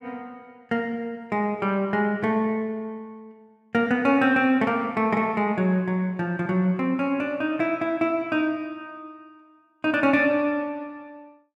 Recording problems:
none

